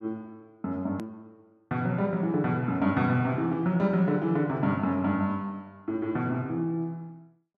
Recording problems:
hard cut with a click; at 1 s

